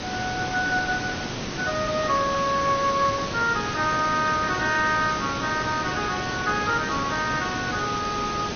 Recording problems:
codec artefacts; MP2, then AAC, log-spectral distance 13 dB
hiss; slope -3 dB per octave, SNR 5 dB

